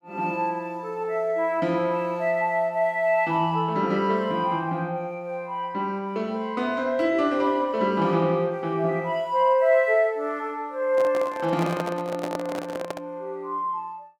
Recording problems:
microphone handling noise; from 11 to 13 s; peak -1 dB vs average level

